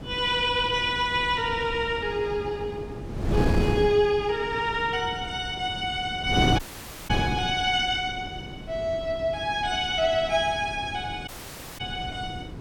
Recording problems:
wind on the microphone; below 350 Hz, SNR 8 dB
dropout; at 6.5 s for 0.5 s and at 11 s for 0.5 s

